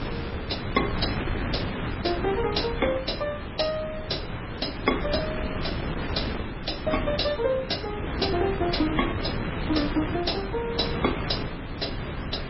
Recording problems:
lossy codec; MP3, log-spectral distance 9 dB, nothing above 5.3 kHz
background hiss; SNR 18 dB
wind on the microphone; below 870 Hz, SNR 3 dB

